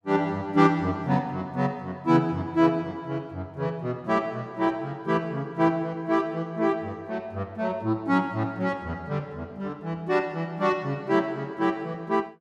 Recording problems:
none

